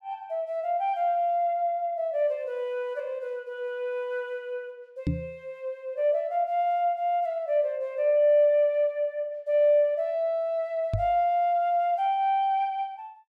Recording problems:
microphone thump; at 5 s and at 11 s; peak +2 dB vs average level

